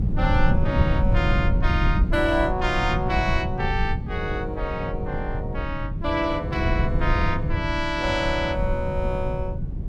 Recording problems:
wind on the microphone; below 130 Hz, SNR 0 dB

